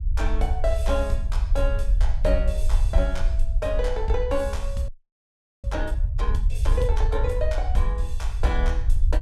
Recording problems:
rumble; below 58 Hz, SNR -3 dB
audio freezing; at 5 s for 1 s

